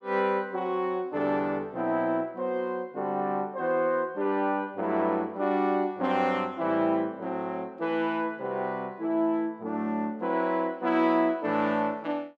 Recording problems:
none

